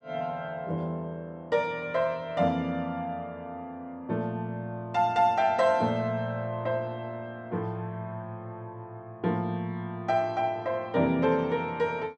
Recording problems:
none

